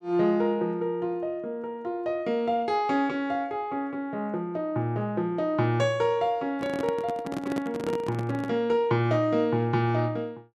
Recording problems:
handling noise; from 6.5 to 8.5 s; peak -1 dB vs average level

